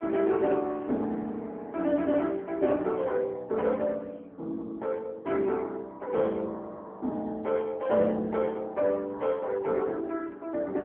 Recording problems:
phone line; 190 Hz to 3 kHz, AMR-NB

